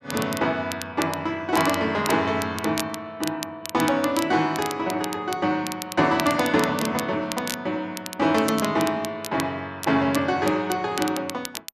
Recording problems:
crackle; vinyl, SNR 11 dB

